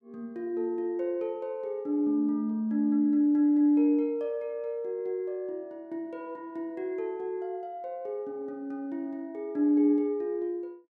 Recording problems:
none

